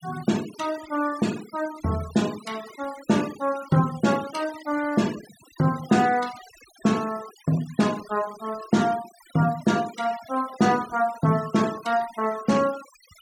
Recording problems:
denoising artefacts; signal-to-artefact ratio 17 dB

